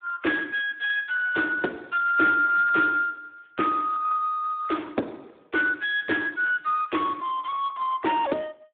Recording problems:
telephone audio; 220 Hz to 3.6 kHz, Speex

